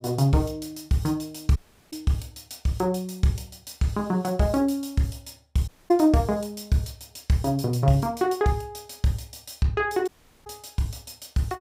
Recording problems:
dropout; at 1.5 s, at 5.5 s and at 10 s

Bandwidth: 15.5 kHz